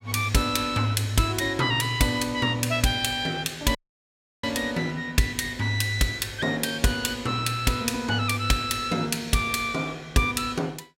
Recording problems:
audio cutting out; at 4 s for 0.5 s

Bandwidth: 16 kHz